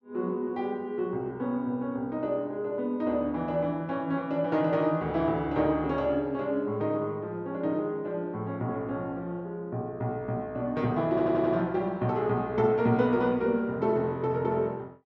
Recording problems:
audio stuttering; at 11 s

